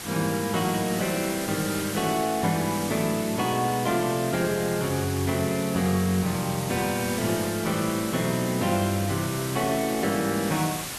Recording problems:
hiss; slope -1 dB per octave, SNR 8 dB

